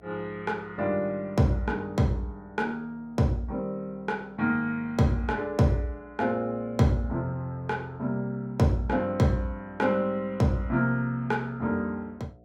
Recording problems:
hum; 60 Hz, harmonics up to 720 Hz, SNR 28 dB

